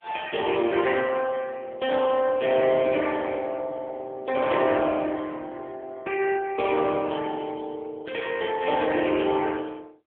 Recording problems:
phone line; 260 Hz to 3.4 kHz, AMR-NB

